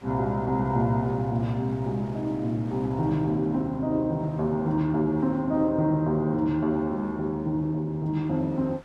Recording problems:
wind noise; below 1.8 kHz, SNR 27 dB

